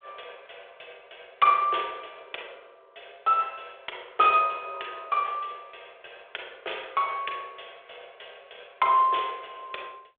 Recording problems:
phone line; 340 Hz to 3.5 kHz, G.726

